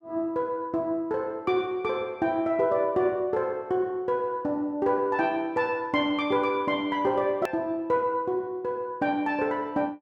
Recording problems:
hard cut with a click; at 7.5 s

